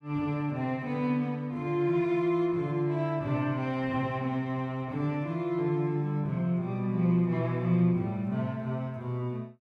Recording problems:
none

